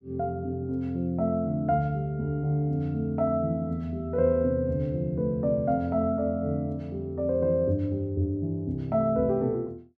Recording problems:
none

